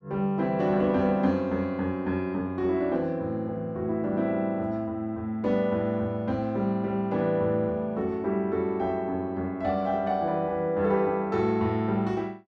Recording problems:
none

